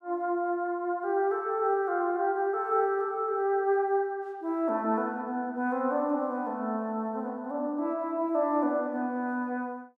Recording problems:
none

